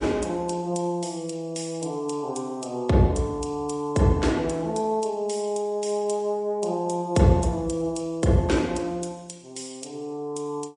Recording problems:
lossy codec; MP3, log-spectral distance 3 dB, nothing above 9.2 kHz

